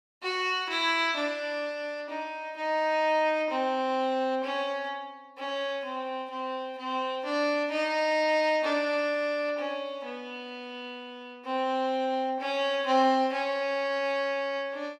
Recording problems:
none

